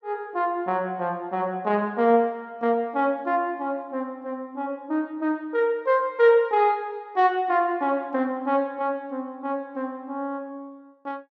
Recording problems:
none

